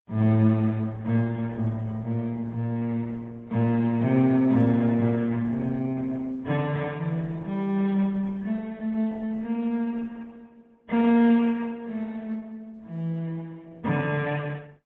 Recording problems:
codec artefacts; AAC, then Opus, log-spectral distance 2 dB

